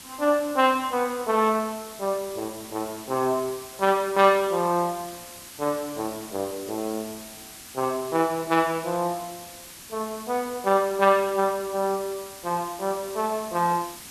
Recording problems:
background hiss; SNR 15 dB

